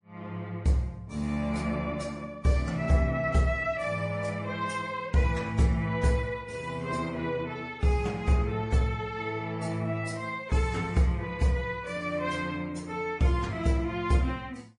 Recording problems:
codec artefacts; AAC, then MP3, log-spectral distance 2 dB, nothing above 10.4 kHz

